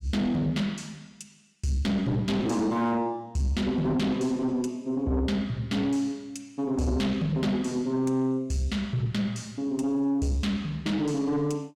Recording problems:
distortion; soft clipping, signal-to-distortion ratio 12 dB

